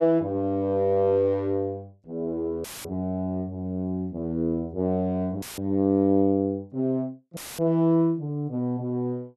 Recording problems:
audio cutting out; at 2.5 s, at 5.5 s and at 7.5 s; filled with static

